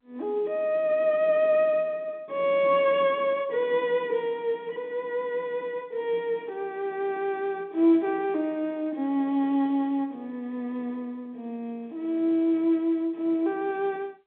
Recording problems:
telephone audio; 130 Hz to 3.8 kHz, G.711

